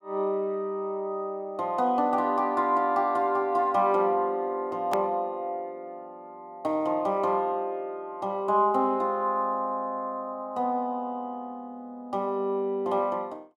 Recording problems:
edit click; at 5 s

